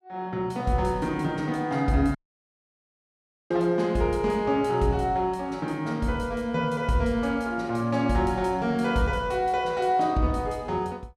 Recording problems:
dropout; at 2 s for 1.5 s

